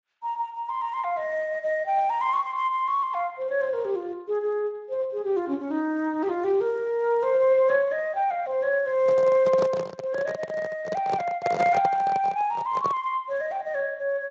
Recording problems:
lossy codec; Speex, then Speex, log-spectral distance 2 dB
microphone handling noise; from 9 to 13 s; peak +1 dB vs average level

